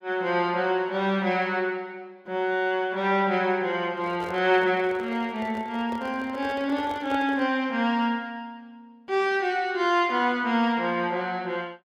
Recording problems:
handling noise; from 4 to 7.5 s; peak -9 dB vs average level

